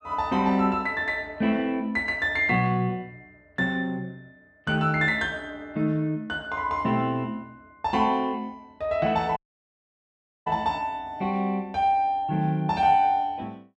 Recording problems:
dropout; at 9.5 s for 1 s

